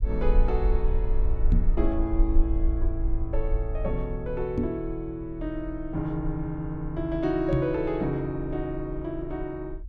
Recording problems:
low-frequency rumble; below 50 Hz, SNR 1 dB
knock on the microphone; at 1.5 s, at 4.5 s and at 7.5 s; peak +8 dB vs average level

